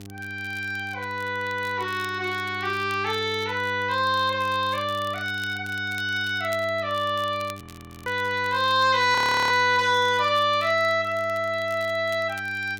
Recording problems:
hum; 50 Hz, harmonics up to 800 Hz, SNR 17 dB
crackling; vinyl, SNR 24 dB
audio freezing; at 7.5 s and at 9 s

